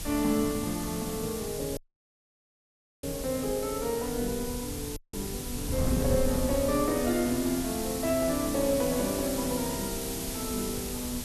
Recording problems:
hiss; slope 0 dB per octave, SNR 6 dB
wind on the microphone; below 170 Hz, SNR 9 dB
dropout; at 2 s for 1.5 s and at 5 s

